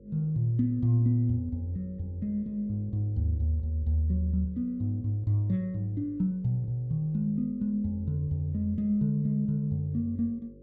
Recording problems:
mains hum; 50 Hz, harmonics up to 550 Hz, SNR 24 dB

